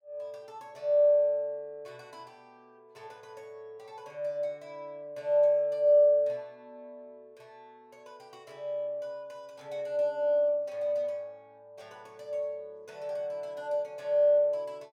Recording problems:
none

